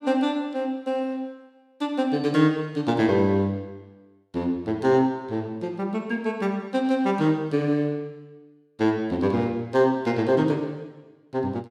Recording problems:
none

